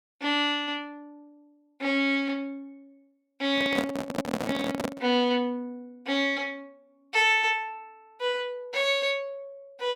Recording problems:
handling noise; from 3.5 to 5 s; peak +3 dB vs average level

